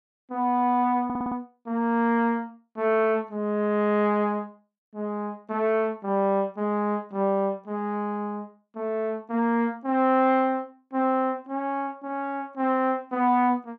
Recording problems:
audio stuttering; at 1 s

